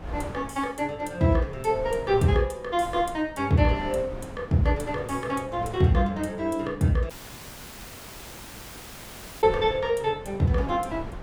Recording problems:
wind noise; below 520 Hz, SNR 15 dB
audio cutting out; at 7 s for 2.5 s

